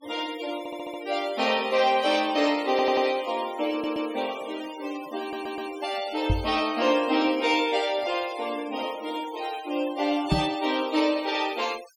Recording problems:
noise reduction artefacts; signal-to-artefact ratio 17 dB
audio stuttering; 4 times, first at 0.5 s
knock on the microphone; at 6.5 s and at 10 s; peak +6 dB vs average level

